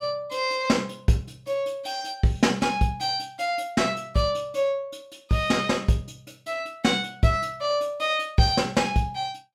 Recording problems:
none

